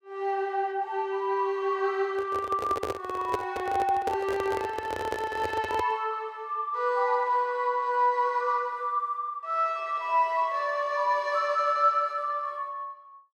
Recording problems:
microphone handling noise; from 2 to 6 s; peak +1 dB vs average level

